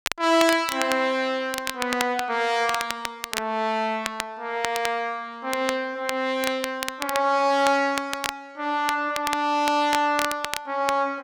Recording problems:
crackle; vinyl, SNR 8 dB

